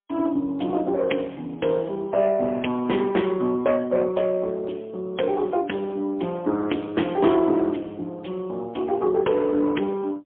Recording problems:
phone line; 150 Hz to 3.3 kHz, AMR-NB, then MP3

